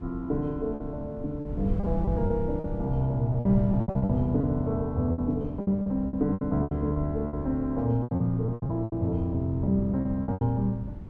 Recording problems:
wind noise; below 140 Hz, SNR 10 dB
lost packets; 14% of the sound replaced, filled with repeated pitch periods

